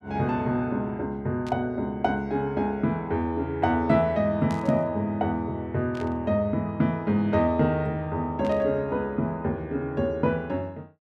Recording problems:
static burst; 4 times, first at 1.5 s; peak -12 dB vs average level

